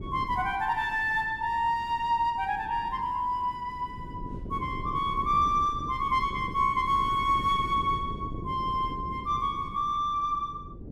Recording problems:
wind on the microphone; below 270 Hz, SNR 13 dB

